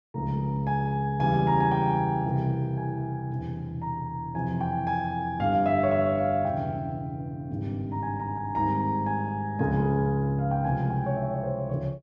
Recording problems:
none

